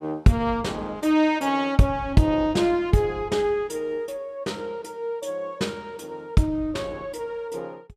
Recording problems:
none

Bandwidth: 15 kHz